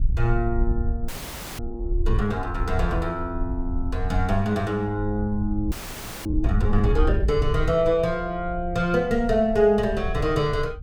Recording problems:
wind noise; below 62 Hz, SNR 6 dB
audio freezing; at 1 s for 0.5 s and at 5.5 s for 0.5 s

